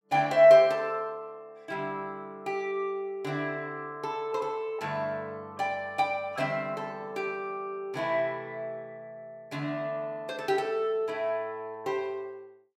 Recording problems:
none

